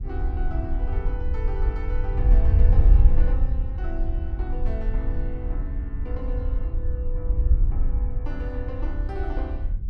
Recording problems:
wind on the microphone; below 64 Hz, SNR -12 dB

